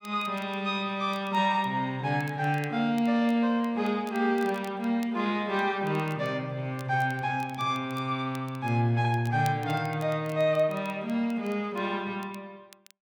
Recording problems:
crackling; vinyl, SNR 25 dB

